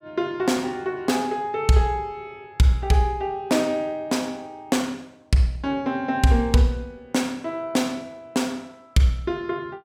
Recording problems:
none

